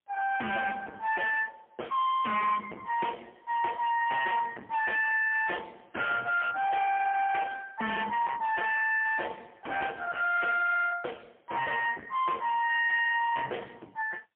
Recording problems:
phone line; 430 Hz to 3.1 kHz, AMR-NB, then MP3
distorted audio; hard clipping, signal-to-distortion ratio 5 dB

